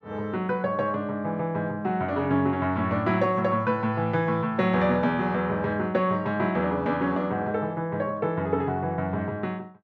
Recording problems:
none

